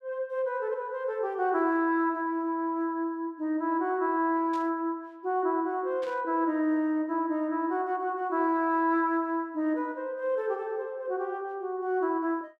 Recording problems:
burst of static; at 4.5 s and at 6 s; peak -14 dB vs average level

